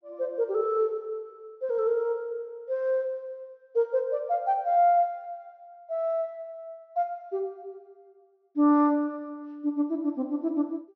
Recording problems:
low-pass filter; nothing above 6.1 kHz

